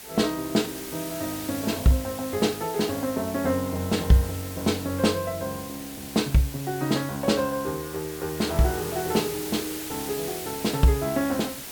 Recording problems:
hiss; SNR 10 dB

